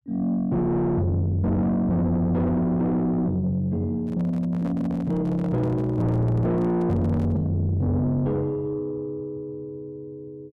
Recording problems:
distortion; soft clipping, signal-to-distortion ratio 7 dB
microphone handling noise; from 4 to 7.5 s; peak -5 dB vs average level

